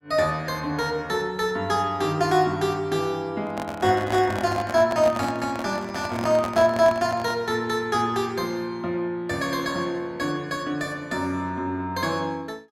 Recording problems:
microphone handling noise; from 3.5 to 7.5 s; peak -2 dB vs average level

